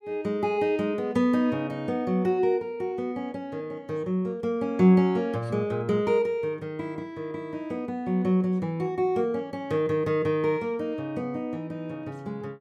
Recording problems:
none

